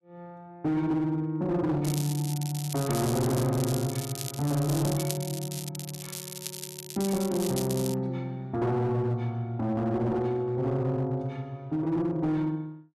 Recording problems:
distorted audio; hard clipping, signal-to-distortion ratio 12 dB
crackle; from 2 to 5.5 s and from 6 to 8 s; loose cable, SNR 9 dB

